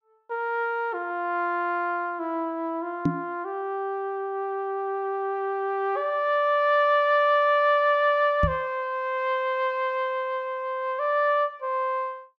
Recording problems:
microphone thump; at 3 s and at 8.5 s; peak +5 dB vs average level

